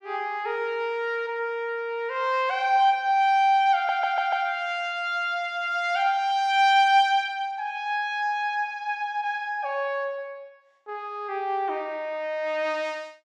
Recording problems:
audio stuttering; at 4 s

